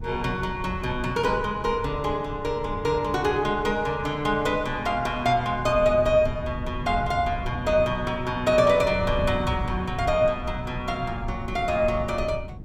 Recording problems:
wind noise; below 130 Hz, SNR 11 dB

